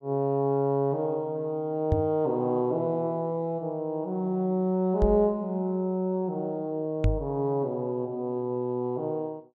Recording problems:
microphone bump; at 2 s, at 5 s and at 7 s; peak +6 dB vs average level

